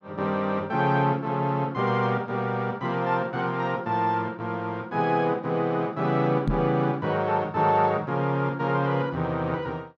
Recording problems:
microphone thump; at 6.5 s; peak +4 dB vs average level

